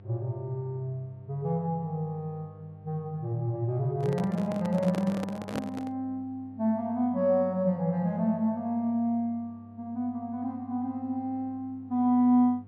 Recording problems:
electrical hum; 50 Hz, harmonics up to 700 Hz, SNR 21 dB
handling noise; from 4 to 6 s; peak -2 dB vs average level

